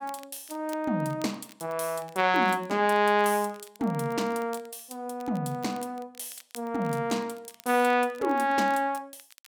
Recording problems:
crackling; vinyl, SNR 25 dB

